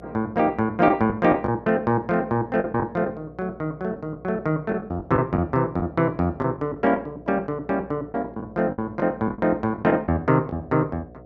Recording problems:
hum; 60 Hz, harmonics up to 720 Hz, SNR 22 dB
packet loss; 8% of the sound replaced, filled with the last packet

